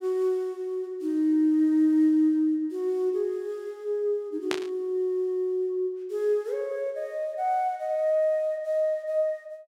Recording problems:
static burst; at 4.5 s; peak 0 dB vs average level

